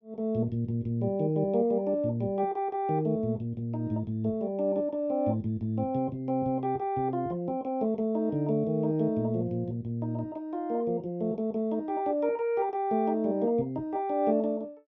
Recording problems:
none

